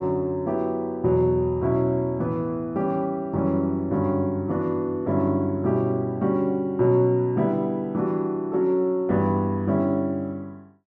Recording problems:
none

